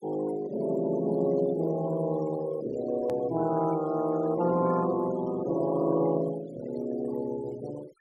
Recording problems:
denoising artefacts; signal-to-artefact ratio 19 dB
click at an edit; at 3 s

